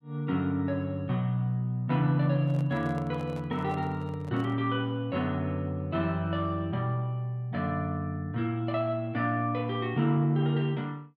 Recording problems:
handling noise; from 2.5 to 4.5 s; peak -11 dB vs average level

